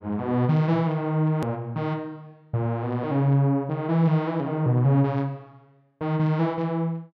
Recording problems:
click at an edit; at 1.5 s

